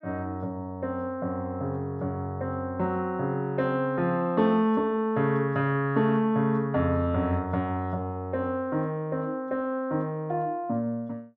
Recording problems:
none

